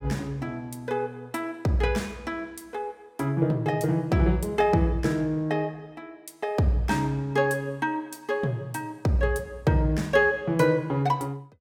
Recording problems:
none

